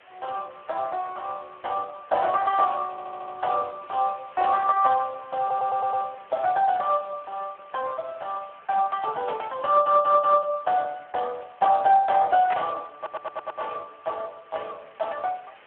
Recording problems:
phone line; 340 Hz to 2.9 kHz, Speex
background hiss; SNR 27 dB
stutter; 4 times, first at 3 s
burst of static; at 13 s; peak -2 dB vs average level

